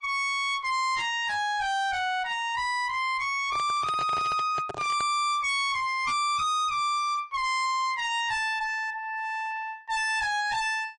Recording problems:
lossy codec; MP3, then MP3, log-spectral distance 2 dB, nothing above 8.2 kHz
distorted audio; hard clipping, signal-to-distortion ratio 7 dB
microphone handling noise; from 3.5 to 5 s; peak -5 dB vs average level

